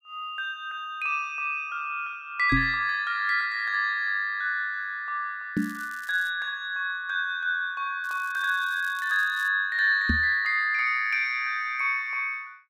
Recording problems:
knock on the microphone; at 2.5 s, at 5.5 s and at 10 s; peak +4 dB vs average level
crackle; at 5.5 s and from 8 to 9.5 s; loose cable, SNR 23 dB

